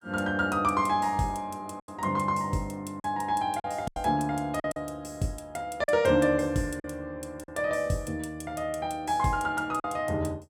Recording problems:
lost packets; 5% of the sound replaced, filled with silence

